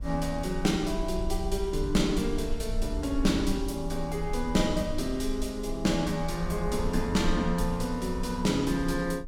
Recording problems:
low-frequency rumble; below 52 Hz, SNR 8 dB

